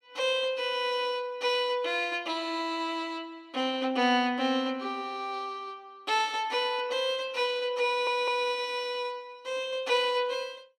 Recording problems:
stutter; at 8 s

